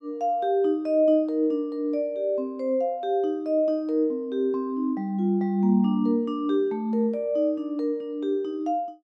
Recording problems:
none

